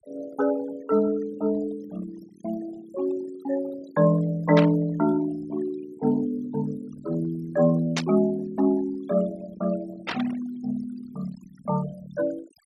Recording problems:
noise reduction artefacts; signal-to-artefact ratio 18 dB
static burst; at 4.5 s, at 8 s and at 10 s; peak +3 dB vs average level

